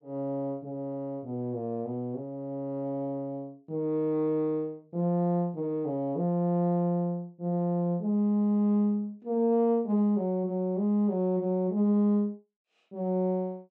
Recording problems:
none

